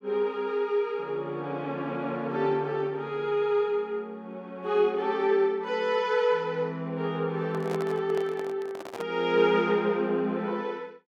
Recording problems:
handling noise; from 7.5 to 9 s; peak -5 dB vs average level

